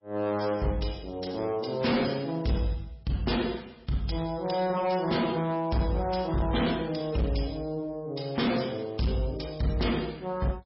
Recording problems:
lossy compression; MP3, log-spectral distance 5 dB, nothing above 5.5 kHz
distorted audio; hard clipping, signal-to-distortion ratio 10 dB

